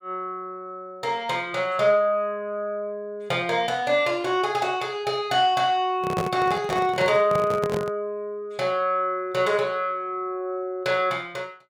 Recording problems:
microphone handling noise; from 6 to 8 s; peak +1 dB vs average level

